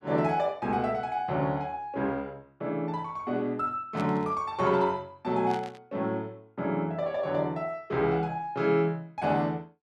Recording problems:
burst of static; at 4 s and at 5.5 s; peak -10 dB vs average level

